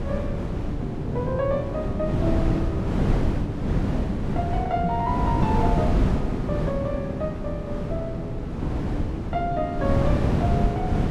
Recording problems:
wind on the microphone; below 260 Hz, SNR -2 dB

